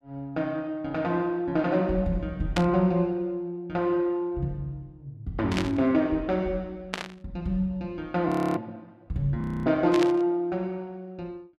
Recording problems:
burst of static; 4 times, first at 2.5 s; peak +1 dB vs average level
audio freezing; at 8.5 s and at 9.5 s

